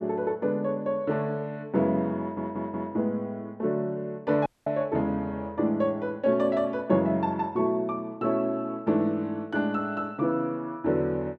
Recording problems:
stutter; at 2 s
dropout; at 4.5 s

